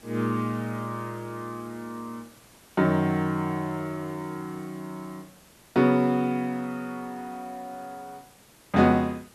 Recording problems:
background hiss; slope -3 dB per octave, SNR 25 dB

